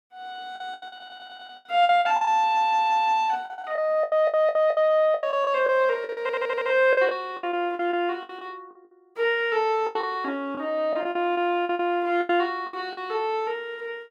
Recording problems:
lost packets; 14% of the sound replaced, filled with the last packet
stutter; 4 times, first at 1 s

